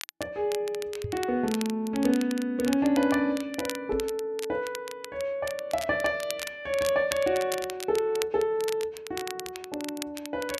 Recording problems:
crackle; vinyl, SNR 11 dB
microphone thump; at 1 s and at 4 s; peak -2 dB vs average level

